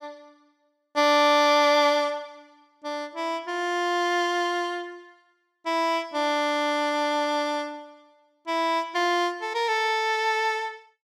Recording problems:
none

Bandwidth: 15 kHz